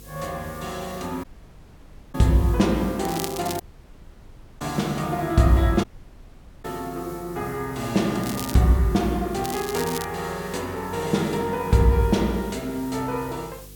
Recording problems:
hum; 50 Hz, harmonics up to 500 Hz, SNR 23 dB
background hiss; slope +1 dB per octave, SNR 21 dB
dropout; at 1 s for 1 s, at 3.5 s for 1 s and at 6 s for 1 s
crackle; at 3 s, at 8 s and at 9.5 s; loose cable, SNR 11 dB

